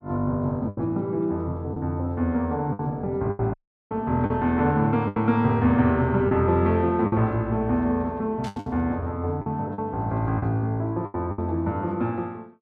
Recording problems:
lost packets; 8% of the sound replaced, filled with the last packet
audio cutting out; at 3.5 s
burst of static; at 8.5 s; peak -12 dB vs average level

